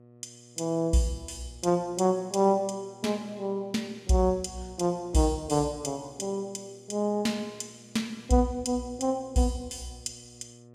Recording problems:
electrical hum; 60 Hz, harmonics up to 1.2 kHz, SNR 25 dB

